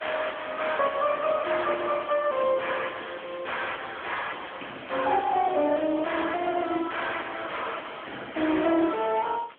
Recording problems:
phone line; 190 Hz to 3.4 kHz, AMR-NB
distorted audio; soft clipping, signal-to-distortion ratio 4 dB
hiss; SNR 29 dB

